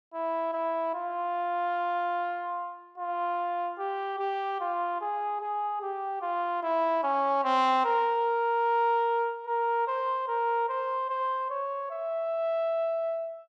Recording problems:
none

